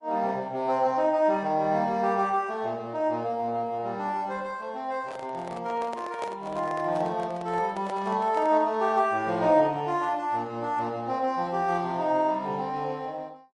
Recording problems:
lossy codec; Opus, then MP3, log-spectral distance 2 dB
microphone handling noise; from 5 to 8.5 s; peak -4 dB vs average level

